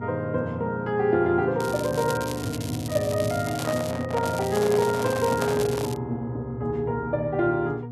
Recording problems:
hum; 60 Hz, harmonics up to 960 Hz, SNR 10 dB
crackling; from 1.5 to 4 s and from 4.5 to 6 s; loose cable, SNR 13 dB
handling noise; from 3.5 to 6 s; peak -1 dB vs average level

